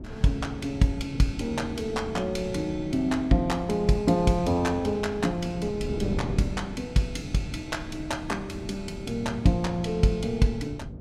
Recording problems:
wind noise; below 270 Hz, SNR 10 dB

